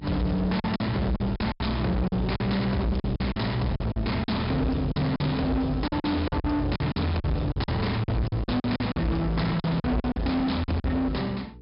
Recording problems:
treble missing; nothing above 5.5 kHz
distortion; soft clipping, signal-to-distortion ratio 7 dB
electrical hum; 60 Hz, harmonics up to 480 Hz, SNR 23 dB
packet loss; 13% of the sound replaced, filled with silence

